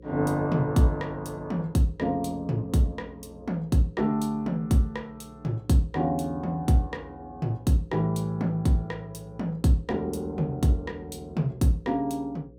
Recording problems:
hum; 60 Hz, harmonics up to 540 Hz, SNR 22 dB

